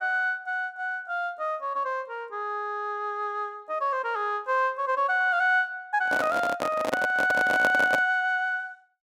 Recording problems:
handling noise; from 6 to 8 s; peak +3 dB vs average level

